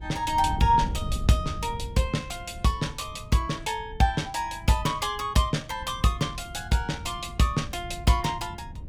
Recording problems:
wind noise; below 130 Hz, SNR 12 dB

